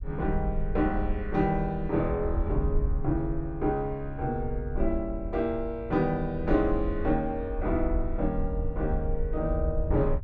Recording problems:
low-frequency rumble; below 62 Hz, SNR 5 dB

